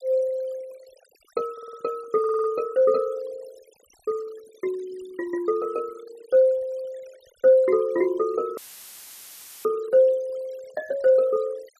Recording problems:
denoising artefacts; signal-to-artefact ratio 25 dB
stutter; at 1.5 s and at 2 s
dropout; at 8.5 s for 1 s; filled with static

